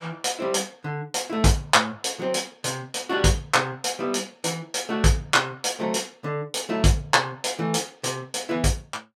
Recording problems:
none

